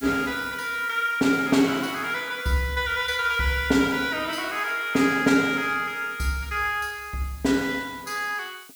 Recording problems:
background hiss; slope +6 dB per octave, SNR 21 dB

